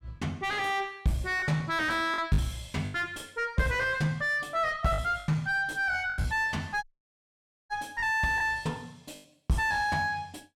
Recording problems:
distortion; soft clipping, signal-to-distortion ratio 3 dB
lost packets; 5% of the sound replaced, filled with the last packet
audio cutting out; at 7 s for 1 s

